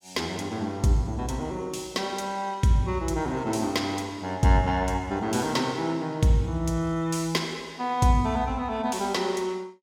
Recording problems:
none

